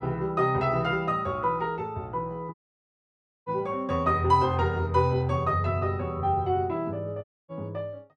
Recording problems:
dropout; at 2.5 s for 1 s and at 7 s

